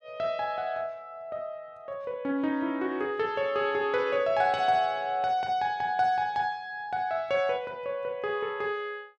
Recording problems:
none

